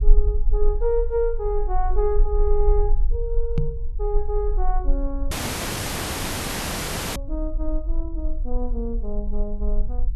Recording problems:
low-frequency rumble; below 40 Hz, strongest tone 18 Hz, SNR -1 dB
microphone thump; at 3.5 s; peak +8 dB vs average level
dropout; at 5.5 s for 2 s

